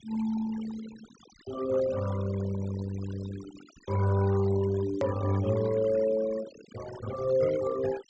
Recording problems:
treble missing; nothing above 8 kHz
denoising artefacts; signal-to-artefact ratio 15 dB
click at an edit; at 5 s

